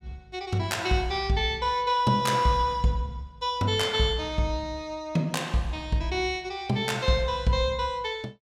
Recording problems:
none

